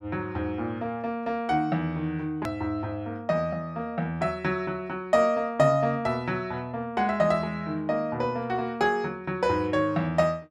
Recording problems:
edit click; at 2.5 s

